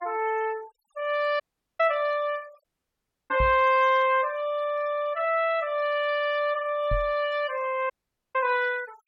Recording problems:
denoising artefacts; signal-to-artefact ratio 22 dB
dropout; at 1.5 s, at 2.5 s for 0.5 s and at 8 s
knock on the microphone; at 3.5 s and at 7 s; peak -1 dB vs average level

